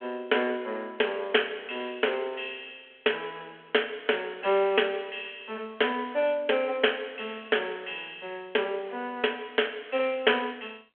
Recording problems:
telephone audio; 320 Hz to 3.3 kHz, G.726

